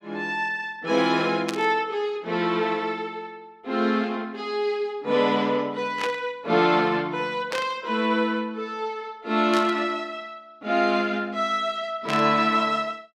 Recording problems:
static burst; 5 times, first at 1.5 s; peak -2 dB vs average level

